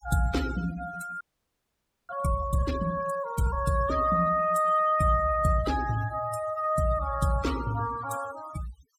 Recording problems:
noise reduction artefacts; signal-to-artefact ratio 15 dB
audio freezing; at 1 s for 1 s

